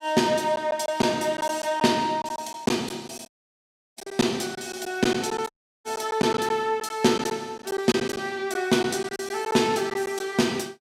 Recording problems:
packet loss; 8% of the sound replaced, filled with silence
dropout; at 3.5 s for 0.5 s and at 5.5 s

